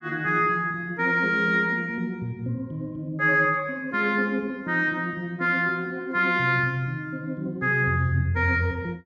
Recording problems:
treble cut off; nothing above 8 kHz

